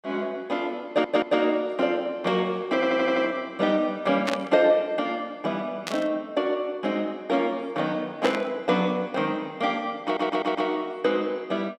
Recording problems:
audio stuttering; at 1 s, at 2.5 s and at 10 s
burst of static; at 4.5 s, at 6 s and at 8 s; peak +1 dB vs average level

